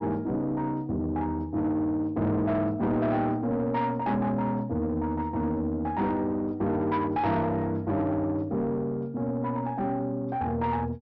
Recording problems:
treble cut off; nothing above 5.7 kHz
distorted audio; soft clipping, signal-to-distortion ratio 10 dB

